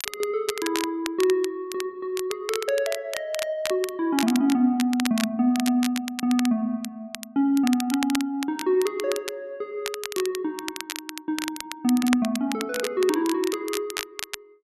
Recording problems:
crackling; vinyl, SNR 9 dB

